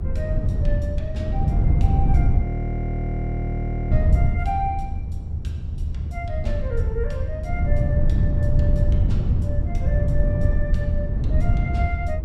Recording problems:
electrical hum; 50 Hz, harmonics up to 750 Hz, SNR 19 dB
rumble; below 80 Hz, SNR -1 dB
wind on the microphone; below 120 Hz, SNR -10 dB
audio freezing; at 2.5 s for 1.5 s

